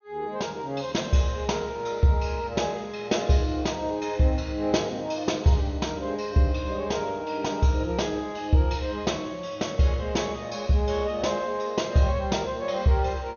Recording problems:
treble missing; nothing above 6.6 kHz

